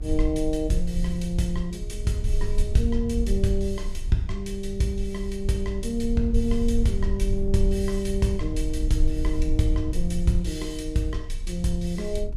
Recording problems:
low-frequency rumble; below 52 Hz, SNR 3 dB

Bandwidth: 14.5 kHz